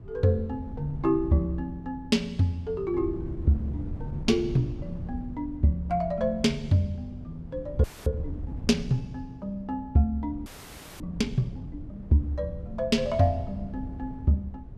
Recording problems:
wind on the microphone; below 140 Hz, SNR 12 dB
audio freezing; at 8 s and at 10 s for 0.5 s

